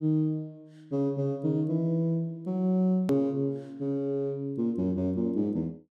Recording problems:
edit click; at 3 s

